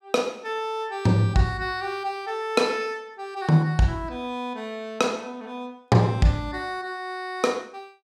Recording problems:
none

